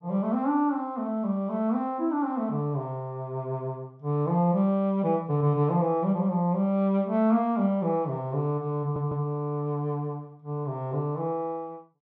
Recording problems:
audio stuttering; at 9 s

